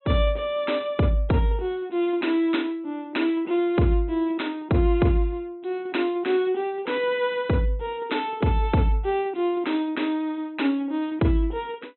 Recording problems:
treble missing; nothing above 4 kHz

